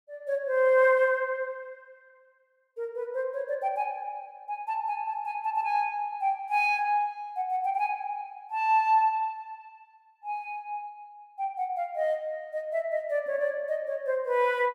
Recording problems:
none

